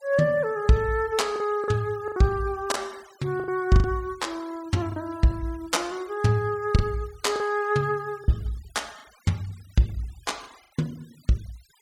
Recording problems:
noise reduction artefacts; signal-to-artefact ratio 25 dB
lost packets; 6% of the sound replaced, filled with the last packet

